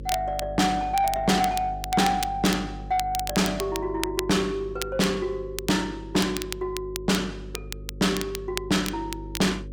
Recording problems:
distortion; soft clipping, signal-to-distortion ratio 7 dB
hum; 50 Hz, harmonics up to 550 Hz, SNR 14 dB
crackle; vinyl, SNR 11 dB

